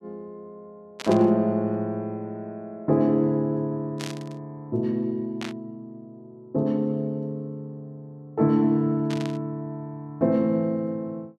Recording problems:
static burst; 4 times, first at 1 s; peak -5 dB vs average level

